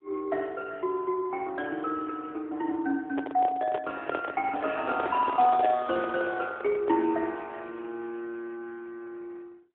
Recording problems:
phone line; 240 Hz to 3.7 kHz, AMR-NB, then MP3
microphone handling noise; from 3 to 7 s; peak 0 dB vs average level

